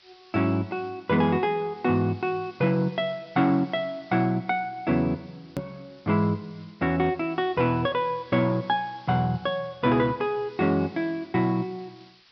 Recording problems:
treble cut off; nothing above 5.5 kHz
hiss; SNR 28 dB
click at an edit; at 5.5 s

